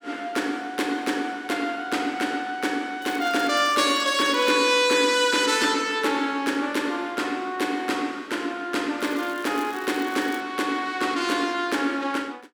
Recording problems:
crackle; from 3 to 4.5 s and from 9 to 10 s; loose cable, SNR 22 dB

